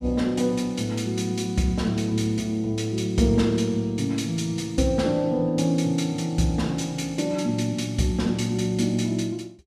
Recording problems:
none

